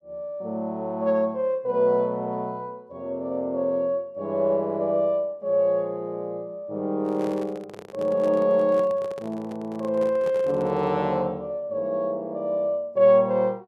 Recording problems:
microphone handling noise; from 7 to 11 s; peak -9 dB vs average level

